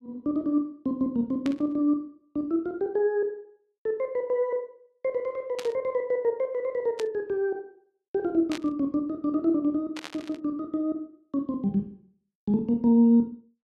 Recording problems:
static burst; 5 times, first at 1.5 s; peak -6 dB vs average level

